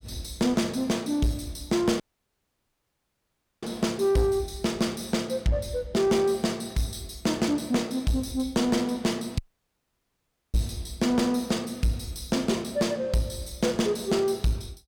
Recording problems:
distorted audio; soft clipping, signal-to-distortion ratio 11 dB
audio cutting out; at 2 s for 1.5 s and at 9.5 s for 1 s

